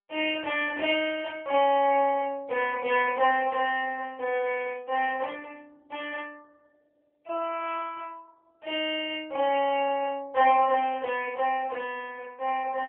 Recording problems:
phone line; 340 Hz to 3.3 kHz, AMR-NB

